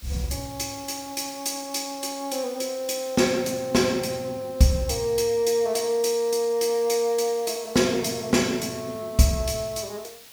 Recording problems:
hiss; slope +1 dB per octave, SNR 21 dB

